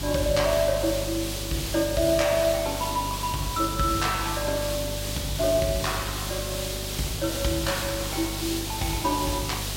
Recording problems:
mains hum; 50 Hz, harmonics up to 400 Hz, SNR 9 dB
hiss; SNR 4 dB
crackling; at 1 s and from 6 to 8.5 s; loose cable, SNR 26 dB

